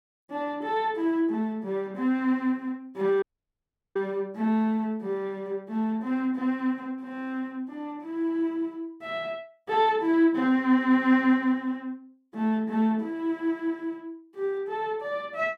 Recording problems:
dropout; at 3 s for 0.5 s

